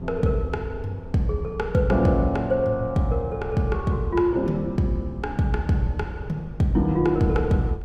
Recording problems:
wind on the microphone; below 110 Hz, SNR 17 dB

